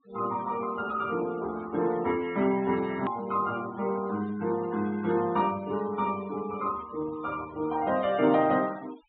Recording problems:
treble cut off; nothing above 4 kHz
noise reduction artefacts; signal-to-artefact ratio 19 dB
hard cut with a click; at 3 s

